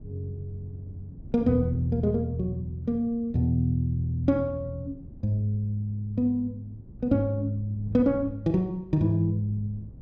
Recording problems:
wind noise; below 170 Hz, SNR 17 dB

